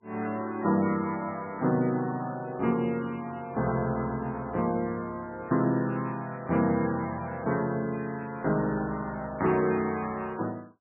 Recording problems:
codec artefacts; MP3, log-spectral distance 3 dB, nothing above 2.9 kHz

